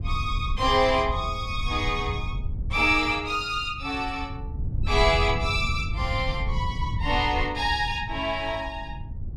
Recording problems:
wind on the microphone; below 100 Hz, SNR 7 dB

